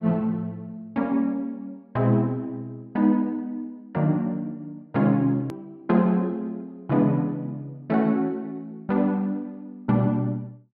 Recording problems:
low-pass filter; nothing above 5.5 kHz
click at an edit; at 5.5 s

